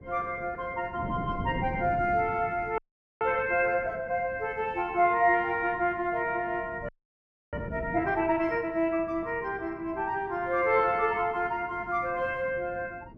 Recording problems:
wind noise; below 290 Hz, SNR 15 dB
audio freezing; at 3 s and at 7 s for 0.5 s

